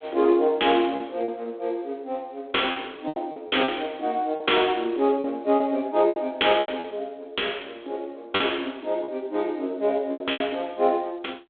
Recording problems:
phone line; 240 Hz to 3.5 kHz, G.726
lost packets; 8% of the sound replaced, filled with repeated pitch periods

